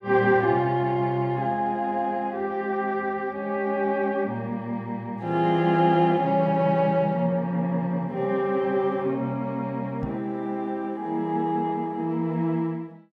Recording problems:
microphone thump; at 10 s; peak -1 dB vs average level

